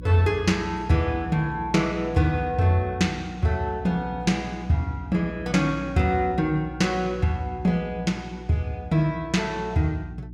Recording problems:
hum; 60 Hz, harmonics up to 360 Hz, SNR 15 dB

